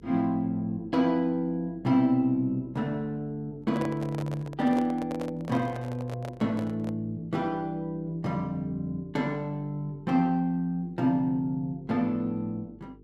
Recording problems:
hum; 50 Hz, harmonics up to 450 Hz, SNR 25 dB
microphone handling noise; from 3.5 to 7 s; peak -3 dB vs average level

